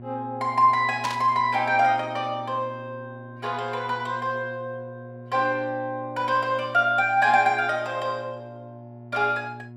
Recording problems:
electrical hum; 60 Hz, harmonics up to 720 Hz, SNR 18 dB
burst of static; at 1 s; peak -4 dB vs average level

